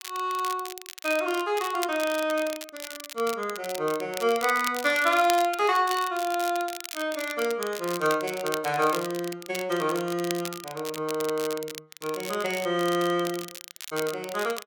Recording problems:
crackling; vinyl, SNR 11 dB

